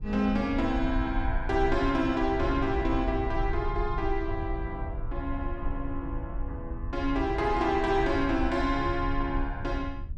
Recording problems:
rumble; below 68 Hz, SNR 7 dB

